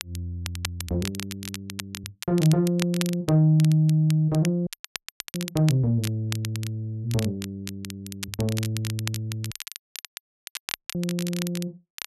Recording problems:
crackling; vinyl, SNR 12 dB
audio cutting out; at 4.5 s for 0.5 s and at 9.5 s for 1.5 s

